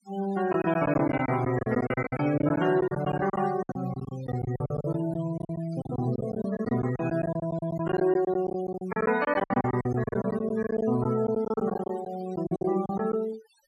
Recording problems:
noise reduction artefacts; signal-to-artefact ratio 16 dB
lost packets; 17% of the sound replaced, filled with silence

